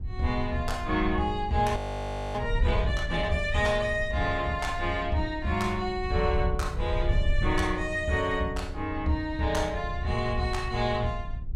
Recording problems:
wind noise; below 78 Hz, SNR 6 dB
frozen audio; at 2 s for 0.5 s

